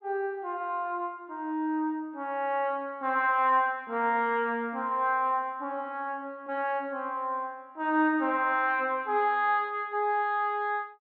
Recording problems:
none

